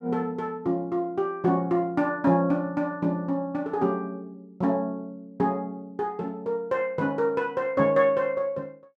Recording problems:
none

